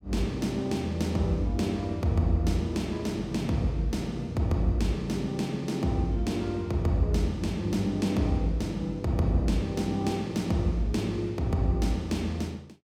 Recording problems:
none

